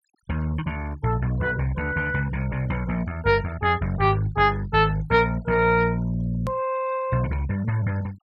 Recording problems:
noise reduction artefacts; signal-to-artefact ratio 24 dB
click at an edit; at 6.5 s

